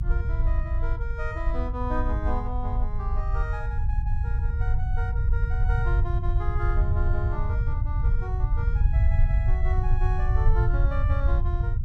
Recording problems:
low-frequency rumble; below 78 Hz, SNR -9 dB

